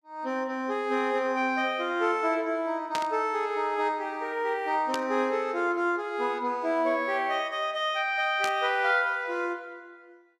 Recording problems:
burst of static; at 3 s, at 5 s and at 8.5 s; peak -2 dB vs average level

